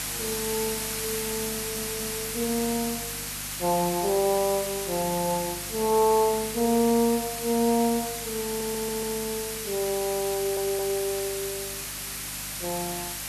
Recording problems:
hum; 50 Hz, harmonics up to 300 Hz, SNR 19 dB
background hiss; slope +1 dB per octave, SNR 4 dB
stutter; at 1.5 s, at 8.5 s and at 10 s

